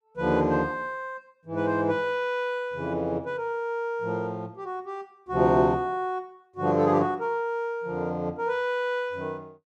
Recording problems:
none

